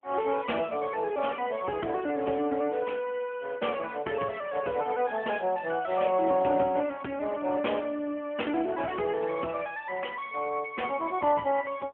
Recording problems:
phone line; 260 Hz to 3.3 kHz, AMR-NB

